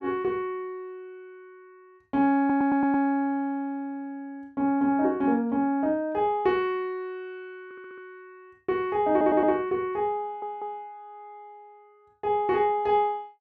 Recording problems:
stutter; 4 times, first at 2.5 s

